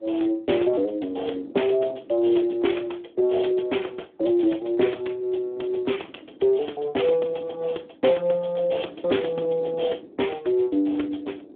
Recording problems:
phone line; 260 Hz to 3.5 kHz, Speex
wind noise; below 410 Hz, SNR 20 dB

